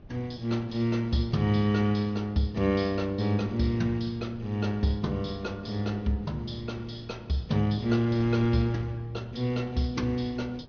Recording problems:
treble cut off; nothing above 6.2 kHz
wind noise; below 260 Hz, SNR 21 dB

